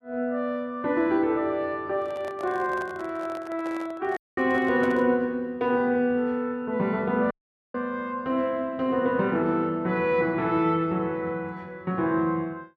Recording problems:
microphone handling noise; from 2 to 5 s; peak -8 dB vs average level
audio cutting out; at 4 s and at 7.5 s

